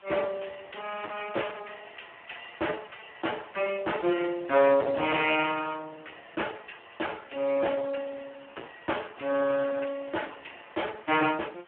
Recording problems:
telephone audio; 320 Hz to 3.1 kHz, Speex
distortion; hard clipping, signal-to-distortion ratio 9 dB
background hiss; SNR 27 dB

